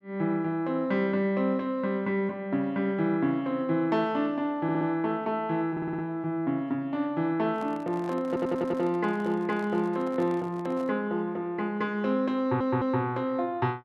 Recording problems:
audio stuttering; 4 times, first at 4.5 s
handling noise; from 7.5 to 11 s; peak -12 dB vs average level

